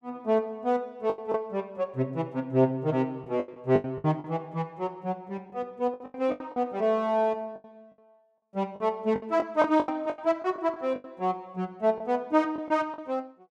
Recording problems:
lost packets; 10% of the sound replaced, filled with the last packet

